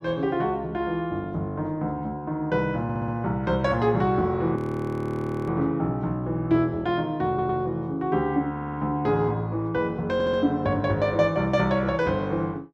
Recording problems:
audio stuttering; 4 times, first at 3 s
frozen audio; at 4.5 s for 1 s

